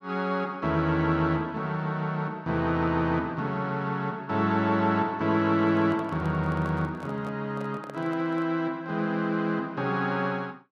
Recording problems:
handling noise; from 5.5 to 8.5 s; peak -10 dB vs average level

